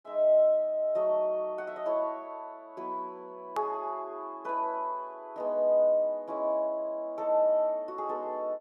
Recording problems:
click at an edit; at 3.5 s

